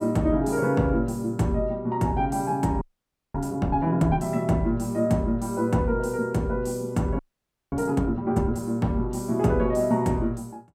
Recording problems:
audio freezing; at 3 s for 0.5 s and at 7 s for 0.5 s

